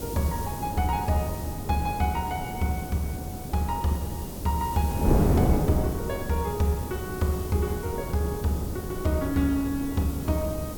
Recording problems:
electrical hum; 50 Hz, harmonics up to 450 Hz, SNR 21 dB
hiss; slope +5 dB per octave, SNR 13 dB
wind on the microphone; below 360 Hz, SNR 3 dB

